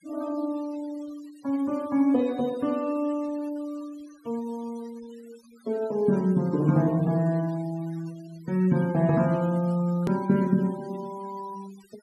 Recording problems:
denoising artefacts; signal-to-artefact ratio 23 dB
hard cut with a click; at 10 s

